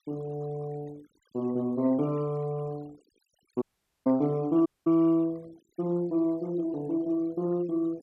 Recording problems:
noise reduction artefacts; signal-to-artefact ratio 26 dB
audio cutting out; at 3.5 s and at 4.5 s

